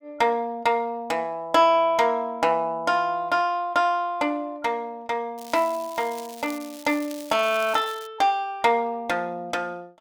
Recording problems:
crackling; from 5.5 to 8 s; loose cable, SNR 18 dB

